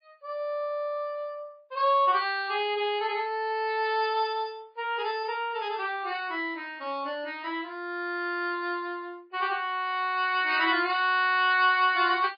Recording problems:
lossy codec; MP3, log-spectral distance 3 dB, nothing above 4.4 kHz

